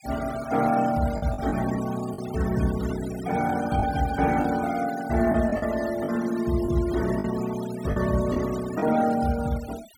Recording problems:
noise reduction artefacts; signal-to-artefact ratio 14 dB
packet loss; 4% of the sound replaced, filled with the last packet

